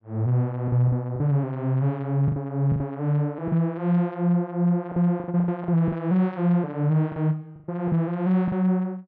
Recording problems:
packet loss; 8% of the sound replaced, filled with the last packet

